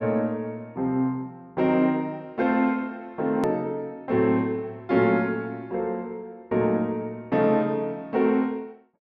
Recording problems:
click at an edit; at 3.5 s

